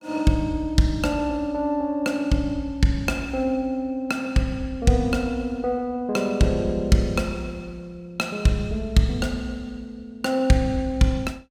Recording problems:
none

